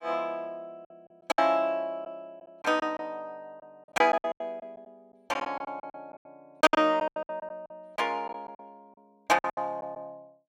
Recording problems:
packet loss; 14% of the sound replaced, filled with silence

